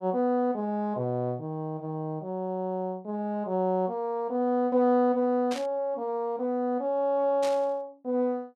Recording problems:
burst of static; at 5.5 s and at 7.5 s; peak -6 dB vs average level

